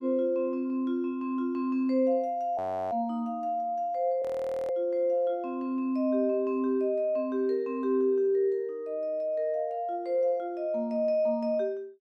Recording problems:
frozen audio; at 2.5 s and at 4 s

